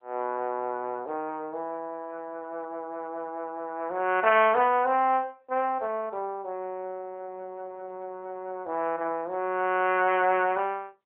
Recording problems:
telephone audio; 320 Hz to 3.1 kHz, AMR-NB

